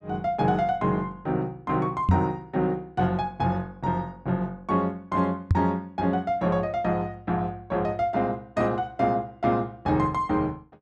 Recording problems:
microphone thump; at 2 s and at 5.5 s; peak +9 dB vs average level

